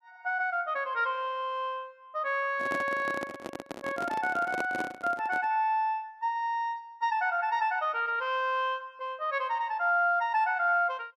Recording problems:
handling noise; from 2.5 to 5.5 s; peak -2 dB vs average level

